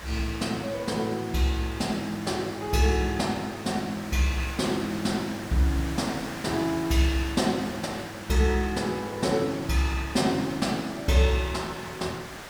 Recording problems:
background hiss; SNR 12 dB

